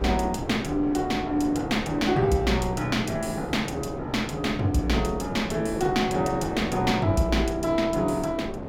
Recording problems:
wind noise; below 530 Hz, SNR 8 dB

